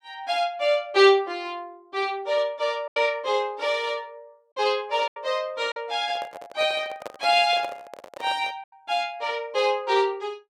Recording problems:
packet loss; 3% of the sound replaced, filled with silence
microphone handling noise; from 6 to 8.5 s; peak -6 dB vs average level

